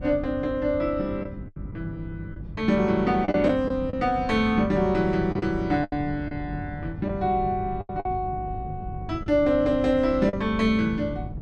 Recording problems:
electrical hum; 50 Hz, harmonics up to 350 Hz, SNR 16 dB
wind on the microphone; below 170 Hz, SNR 14 dB
lost packets; 6% of the sound replaced, filled with the last packet

